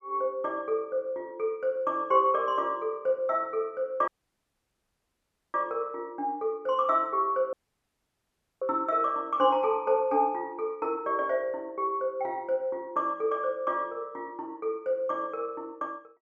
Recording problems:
audio cutting out; at 4 s for 1.5 s and at 7.5 s for 1 s

